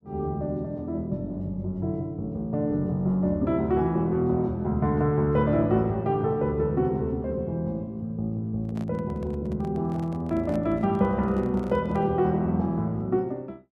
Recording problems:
handling noise; from 8.5 to 12 s; peak -10 dB vs average level

